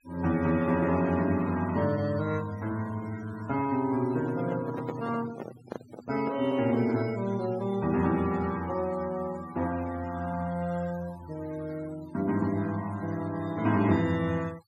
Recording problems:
denoising artefacts; signal-to-artefact ratio 19 dB
handling noise; from 4 to 7 s; peak -3 dB vs average level

